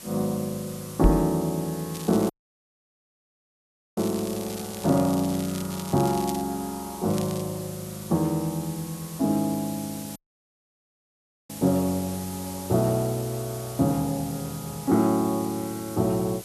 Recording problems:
background hiss; SNR 13 dB
microphone thump; at 1 s; peak +8 dB vs average level
crackle; from 2 to 6.5 s and at 7 s; loose cable, SNR 14 dB
audio cutting out; at 2.5 s for 1.5 s and at 10 s for 1.5 s

